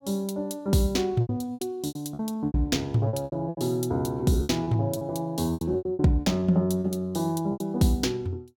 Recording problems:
lost packets; 14% of the sound replaced, filled with repeated pitch periods

